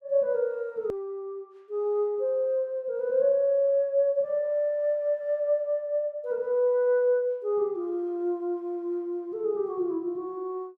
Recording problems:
click at an edit; at 1 s

